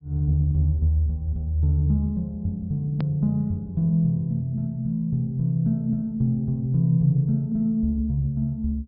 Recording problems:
low-pass filter; nothing above 5.5 kHz
hard cut with a click; at 3 s

